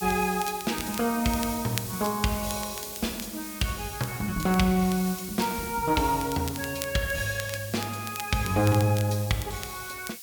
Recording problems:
background hiss; slope +6 dB per octave, SNR 10 dB
crackle; vinyl, SNR 14 dB

